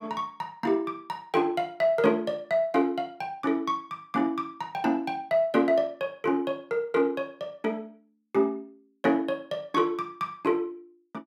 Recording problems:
none

